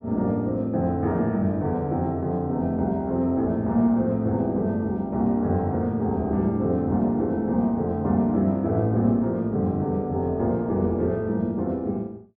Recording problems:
none

